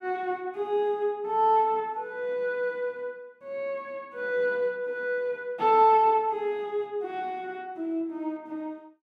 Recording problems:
none

